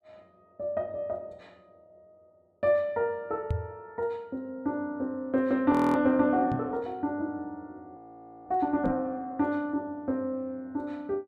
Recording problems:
microphone bump; at 3.5 s, at 6.5 s and at 9 s; peak +3 dB vs average level
frozen audio; at 5.5 s and at 8 s

